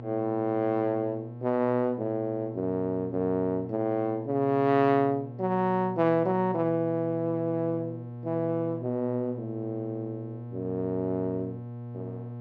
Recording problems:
mains hum; 60 Hz, harmonics up to 840 Hz, SNR 12 dB

